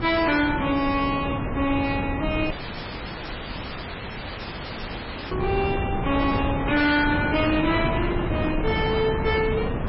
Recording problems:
lossy codec; MP3, log-spectral distance 8 dB, nothing above 4.8 kHz
distorted audio; hard clipping, signal-to-distortion ratio 11 dB
wind on the microphone; below 470 Hz, SNR 4 dB
audio cutting out; at 2.5 s for 3 s

